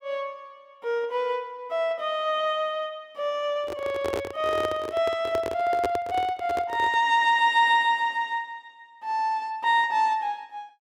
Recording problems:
handling noise; from 3.5 to 7 s; peak 0 dB vs average level

